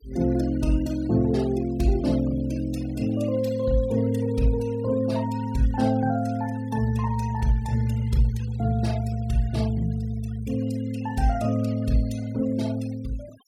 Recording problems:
denoising artefacts; signal-to-artefact ratio 23 dB

